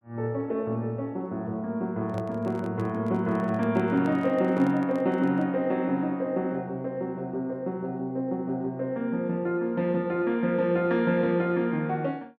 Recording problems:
microphone handling noise; from 2 to 5.5 s; peak -9 dB vs average level

